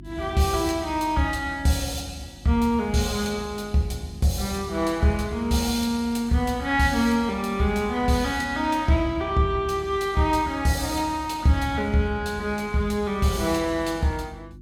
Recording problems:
hum; 50 Hz, harmonics up to 350 Hz, SNR 21 dB

